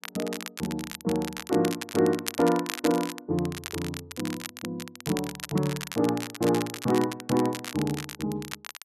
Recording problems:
crackle; vinyl, SNR 9 dB

